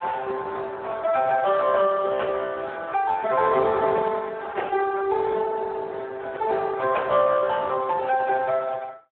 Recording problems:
telephone audio; 340 Hz to 3 kHz, Speex

